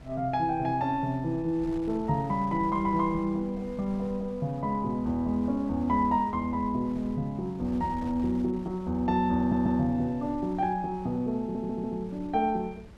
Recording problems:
wind on the microphone; below 220 Hz, SNR 19 dB
stutter; at 9.5 s and at 11 s

